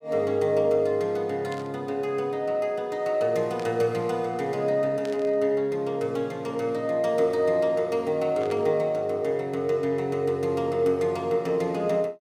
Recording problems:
burst of static; 4 times, first at 1.5 s; peak -12 dB vs average level

